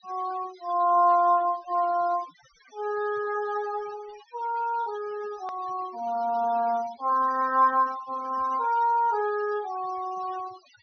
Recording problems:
treble missing; nothing above 6.1 kHz
denoising artefacts; signal-to-artefact ratio 22 dB
click at an edit; at 5.5 s

